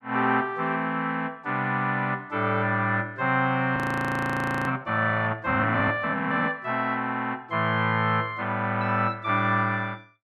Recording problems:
audio freezing; at 4 s for 1 s

